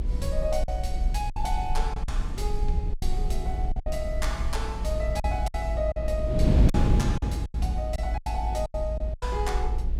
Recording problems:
rumble; below 56 Hz, SNR -2 dB
wind noise; below 200 Hz, SNR -2 dB
lost packets; 9% of the sound replaced, filled with silence

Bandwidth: 16.5 kHz